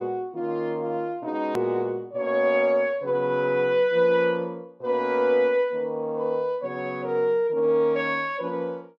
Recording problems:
edit click; at 1.5 s

